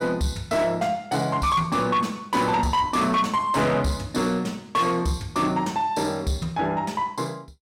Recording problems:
distorted audio; soft clipping, signal-to-distortion ratio 11 dB

